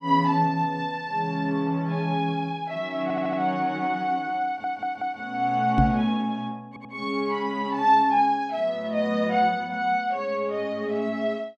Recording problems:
stutter; at 3 s, at 4.5 s and at 6.5 s
microphone thump; at 6 s; peak +5 dB vs average level

